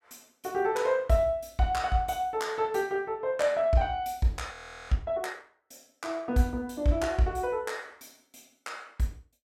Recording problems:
audio freezing; at 4.5 s

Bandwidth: 16.5 kHz